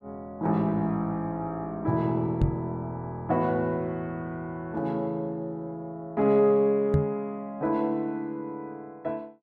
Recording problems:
knock on the microphone; at 2.5 s and at 7 s; peak +8 dB vs average level

